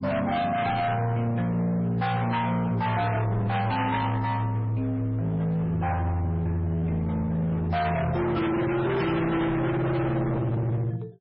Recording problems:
lossy compression; MP3, then MP3, log-spectral distance 2 dB, nothing above 5.2 kHz
distorted audio; hard clipping, signal-to-distortion ratio 6 dB

